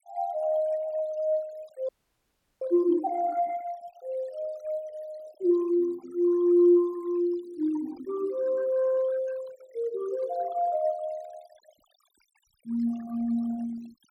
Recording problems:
noise reduction artefacts; signal-to-artefact ratio 25 dB
frozen audio; at 2 s for 0.5 s

